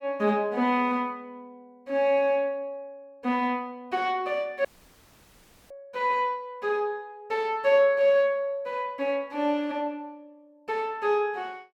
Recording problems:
audio cutting out; at 4.5 s for 1 s

